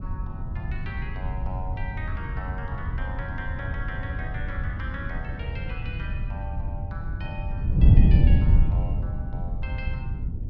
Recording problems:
wind noise; below 110 Hz, SNR -12 dB

